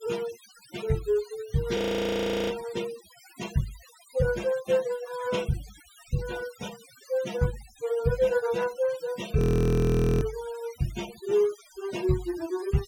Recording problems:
denoising artefacts; signal-to-artefact ratio 16 dB
audio freezing; at 2 s for 0.5 s and at 9.5 s for 1 s

